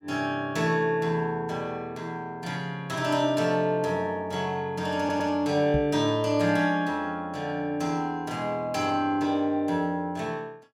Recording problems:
audio stuttering; at 5 s
microphone bump; at 5.5 s; peak +1 dB vs average level

